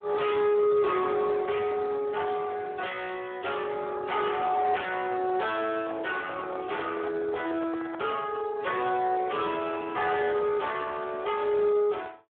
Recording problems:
telephone audio; 280 Hz to 3.6 kHz, Speex
distorted audio; soft clipping, signal-to-distortion ratio 11 dB
handling noise; from 5.5 to 8 s; peak -5 dB vs average level

